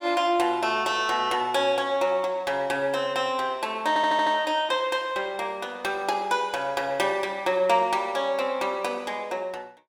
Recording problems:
stutter; at 4 s

